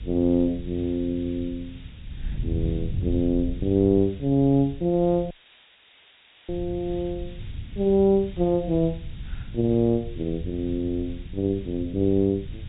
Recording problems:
low-pass filter; nothing above 4 kHz
hiss; SNR 27 dB
wind on the microphone; below 110 Hz, SNR 12 dB
dropout; at 5.5 s for 1 s

